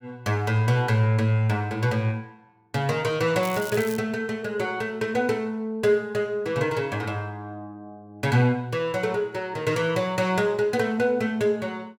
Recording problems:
crackling; at 3.5 s; loose cable, SNR 15 dB

